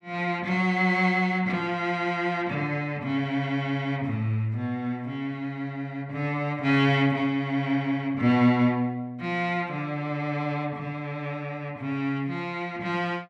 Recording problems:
none

